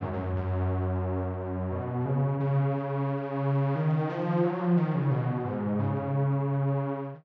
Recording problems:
none

